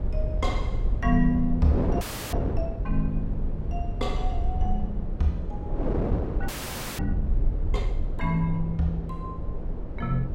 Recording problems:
rumble; below 60 Hz, SNR 2 dB
wind on the microphone; below 460 Hz, SNR 6 dB
audio freezing; at 2 s and at 6.5 s for 0.5 s

